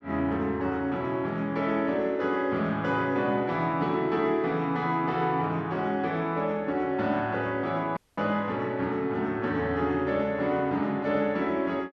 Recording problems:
dropout; at 8 s

